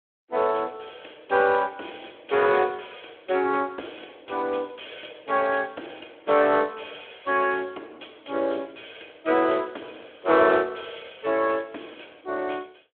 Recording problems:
phone line; 260 Hz to 3.4 kHz, Speex

